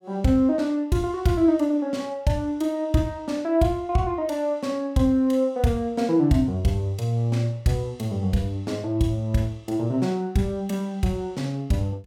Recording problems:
none

